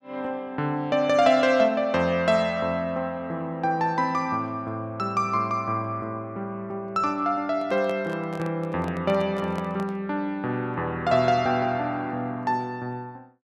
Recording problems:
handling noise; from 7.5 to 10 s; peak -8 dB vs average level

